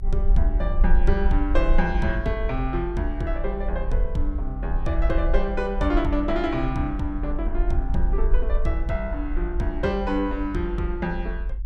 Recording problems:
rumble; below 46 Hz, strongest tone 20 Hz, SNR 1 dB

